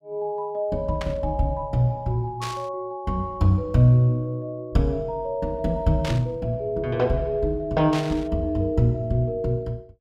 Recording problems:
burst of static; 4 times, first at 1 s; peak -5 dB vs average level

